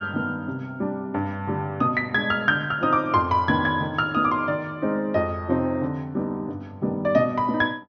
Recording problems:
low-pass filter; nothing above 6.2 kHz

